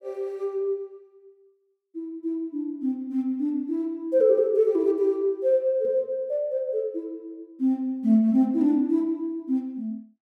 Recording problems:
none

